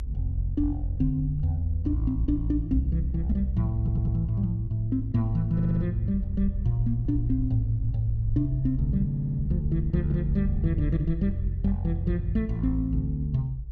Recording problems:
low-frequency rumble; below 62 Hz, SNR 7 dB
stutter; at 4 s, at 5.5 s and at 9 s

